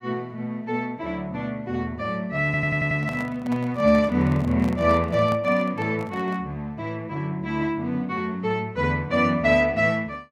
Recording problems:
microphone handling noise; from 2.5 to 6.5 s; peak -6 dB vs average level
audio stuttering; at 2.5 s

